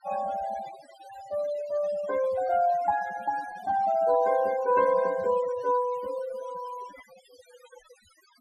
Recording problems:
denoising artefacts; signal-to-artefact ratio 16 dB

